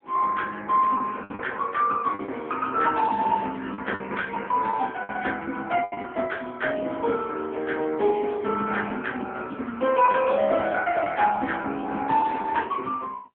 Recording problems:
phone line; 190 Hz to 3.4 kHz, AMR-NB
packet loss; 6% of the sound replaced, filled with the last packet

